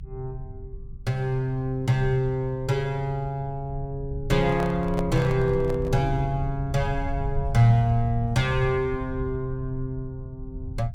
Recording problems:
low-frequency rumble; below 92 Hz, SNR 10 dB
handling noise; from 4.5 to 6 s; peak -4 dB vs average level

